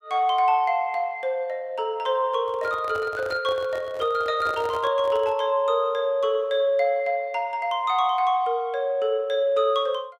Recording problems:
handling noise; from 2.5 to 5.5 s; peak -8 dB vs average level

